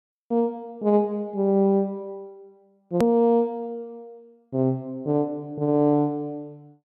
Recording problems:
hard cut with a click; at 3 s

